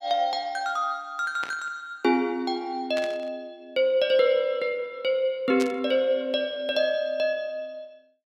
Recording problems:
static burst; at 1.5 s, at 3 s and at 5.5 s; peak -4 dB vs average level

